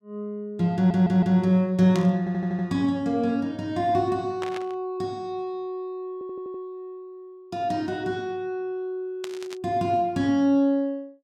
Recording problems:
audio stuttering; at 1 s, at 2 s and at 6 s
static burst; at 2 s, at 4.5 s and at 9 s; peak -6 dB vs average level

